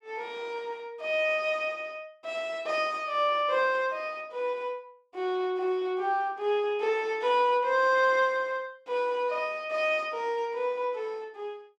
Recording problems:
none

